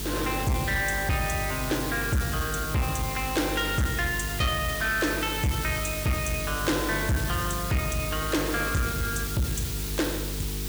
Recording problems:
distorted audio; soft clipping, signal-to-distortion ratio 10 dB
hum; 50 Hz, harmonics up to 450 Hz, SNR 8 dB
background hiss; slope +1 dB per octave, SNR 6 dB

